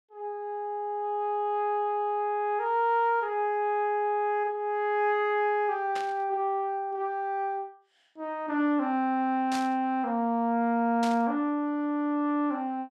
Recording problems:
burst of static; at 6 s, at 9.5 s and at 11 s; peak -5 dB vs average level

